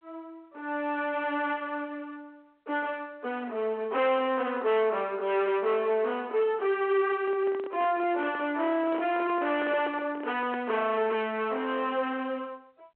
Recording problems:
telephone audio; 300 Hz to 3.4 kHz, G.726
distortion; hard clipping, signal-to-distortion ratio 8 dB
microphone handling noise; from 7 to 11 s; peak -6 dB vs average level

